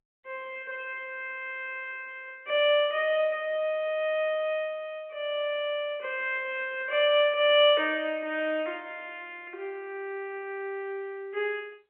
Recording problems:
phone line; 260 Hz to 3.4 kHz, G.711

